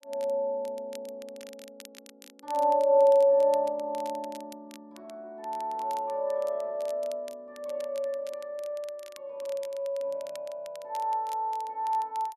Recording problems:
crackle; vinyl, SNR 23 dB

